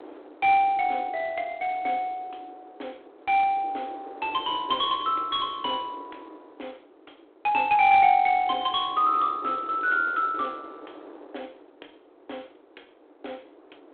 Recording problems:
phone line; 280 Hz to 3.5 kHz, G.726
wind noise; below 690 Hz, SNR 22 dB

